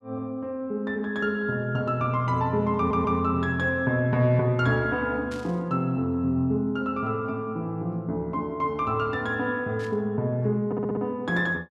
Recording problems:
stutter; at 3 s and at 11 s
burst of static; at 5.5 s and at 10 s; peak -13 dB vs average level

